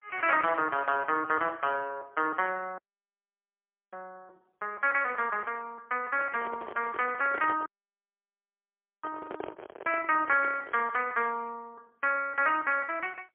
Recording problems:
phone line; 280 Hz to 3.2 kHz, AMR-NB, then MP3
audio cutting out; at 3 s for 1 s and at 7.5 s for 1.5 s
microphone handling noise; from 6 to 11 s; peak -5 dB vs average level

